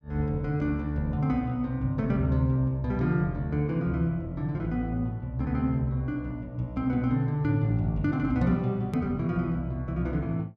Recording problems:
hard cut with a click; at 9 s

